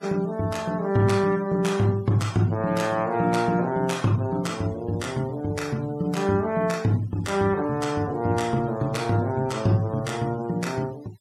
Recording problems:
denoising artefacts; signal-to-artefact ratio 23 dB

